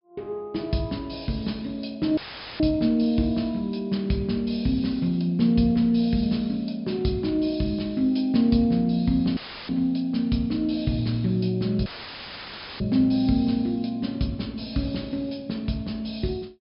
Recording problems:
treble missing; nothing above 5.5 kHz
dropout; at 2 s, at 9.5 s and at 12 s for 1 s; filled with static

